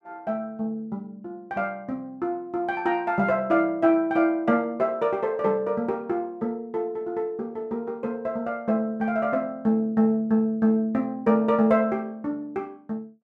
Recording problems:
none

